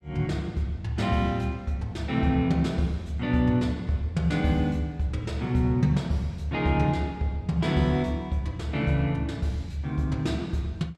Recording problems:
none

